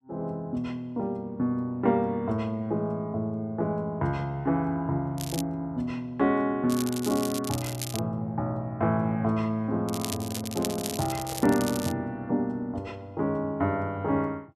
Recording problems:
crackle; at 5 s, from 6.5 to 8 s and from 10 to 12 s; loose cable, SNR 8 dB
handling noise; from 10 to 12 s; peak -9 dB vs average level

